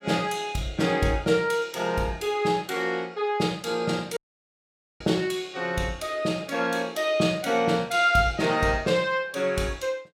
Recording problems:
audio cutting out; at 4 s for 1 s

